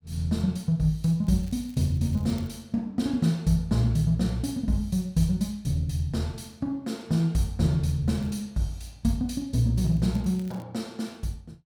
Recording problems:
crackle; from 1 to 2.5 s, at 8 s and at 10 s; loose cable, SNR 29 dB

